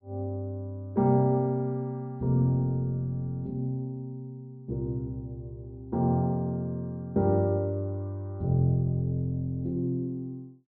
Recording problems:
treble cut off; nothing above 5.1 kHz

